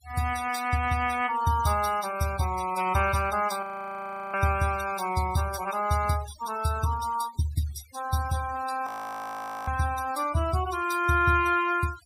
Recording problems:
denoising artefacts; signal-to-artefact ratio 16 dB
frozen audio; at 3.5 s for 0.5 s and at 9 s for 1 s

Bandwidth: 15.5 kHz